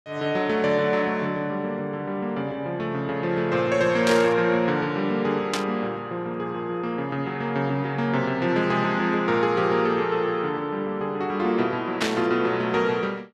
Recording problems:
burst of static; at 4 s, at 5.5 s and at 12 s; peak +2 dB vs average level

